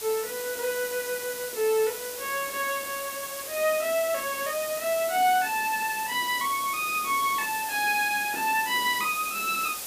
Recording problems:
background hiss; slope 0 dB per octave, SNR 7 dB

